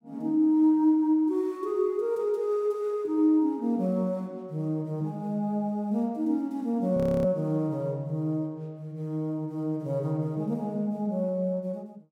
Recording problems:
frozen audio; at 7 s

